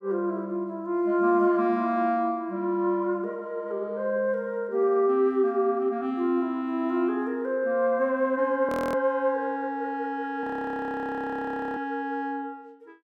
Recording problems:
frozen audio; at 8.5 s and at 10 s for 1.5 s

